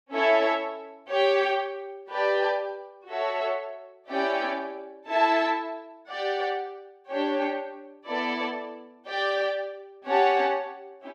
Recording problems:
none

